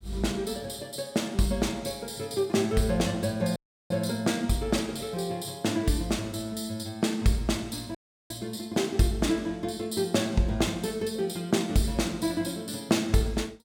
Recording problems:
audio cutting out; at 3.5 s and at 8 s

